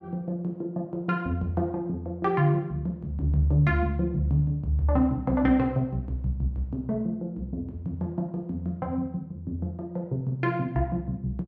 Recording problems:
none

